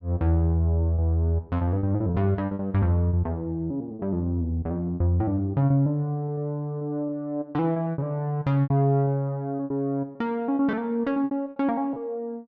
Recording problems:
lost packets; 10% of the sound replaced, filled with repeated pitch periods

